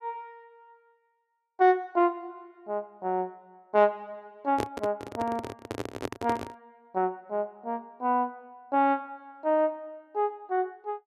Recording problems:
microphone handling noise; from 4.5 to 6.5 s; peak +2 dB vs average level

